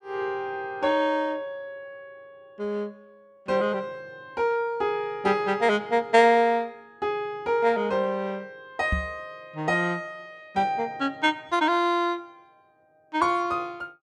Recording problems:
microphone bump; at 9 s; peak +2 dB vs average level

